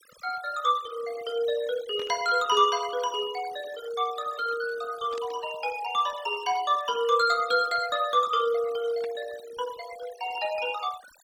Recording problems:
noise reduction artefacts; signal-to-artefact ratio 18 dB
static burst; at 2 s, at 5 s and at 9 s; peak -12 dB vs average level

